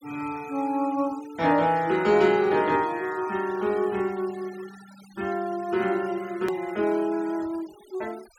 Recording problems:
noise reduction artefacts; signal-to-artefact ratio 22 dB
click at an edit; at 6.5 s

